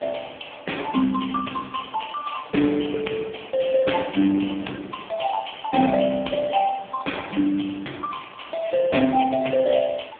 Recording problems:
phone line; 220 Hz to 3.5 kHz, AMR-NB
hiss; SNR 26 dB
wind on the microphone; below 650 Hz, SNR 22 dB

